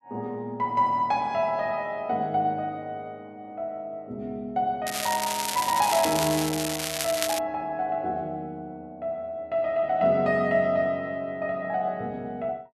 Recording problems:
crackling; from 5 to 7.5 s; loose cable, SNR 3 dB

